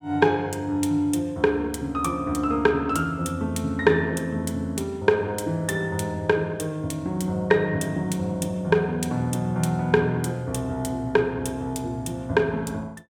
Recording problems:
none

